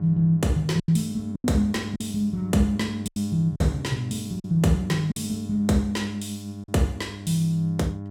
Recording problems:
hum; 50 Hz, harmonics up to 1 kHz, SNR 12 dB
lost packets; 6% of the sound replaced, filled with silence

